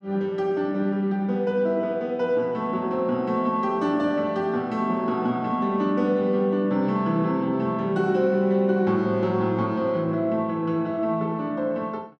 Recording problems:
none

